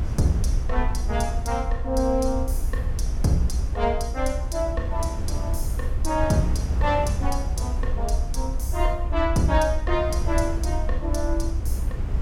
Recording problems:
rumble; below 64 Hz, SNR 2 dB
wind on the microphone; below 130 Hz, SNR 6 dB

